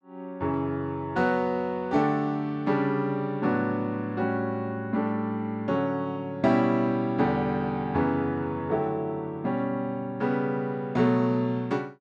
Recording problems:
none

